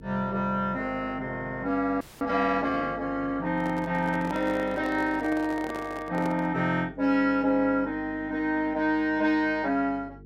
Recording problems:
hum; 50 Hz, harmonics up to 450 Hz, SNR 21 dB
audio freezing; at 2 s
microphone handling noise; from 3.5 to 6.5 s; peak -6 dB vs average level

